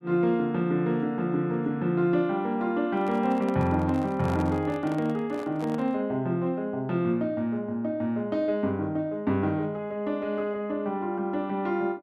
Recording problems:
microphone handling noise; from 3 to 6 s; peak -7 dB vs average level

